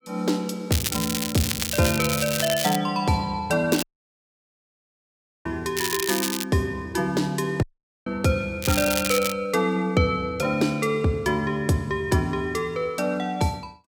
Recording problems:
crackle; 4 times, first at 0.5 s; loose cable, SNR 3 dB
audio cutting out; at 4 s for 1.5 s and at 7.5 s

